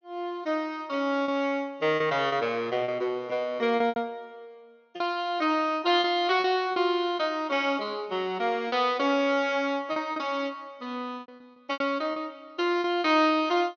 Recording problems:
treble missing; nothing above 6.5 kHz
lost packets; 7% of the sound replaced, filled with repeated pitch periods

